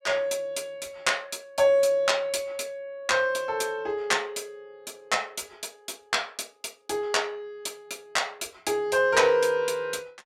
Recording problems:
none

